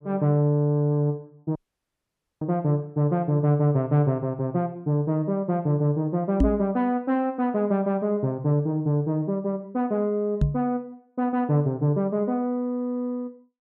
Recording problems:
audio cutting out; at 1.5 s for 1 s
microphone thump; at 6.5 s and at 10 s; peak +7 dB vs average level

